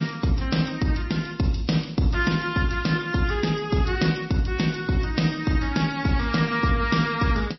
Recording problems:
codec artefacts; MP3, then MP3, log-spectral distance 6 dB, nothing above 5.7 kHz

